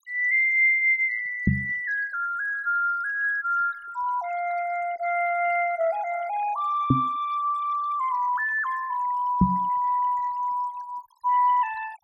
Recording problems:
denoising artefacts; signal-to-artefact ratio 23 dB
microphone bump; at 1.5 s, at 7 s and at 9.5 s; peak +8 dB vs average level

